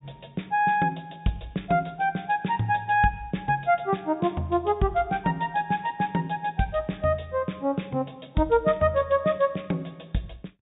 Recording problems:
low-pass filter; nothing above 4 kHz

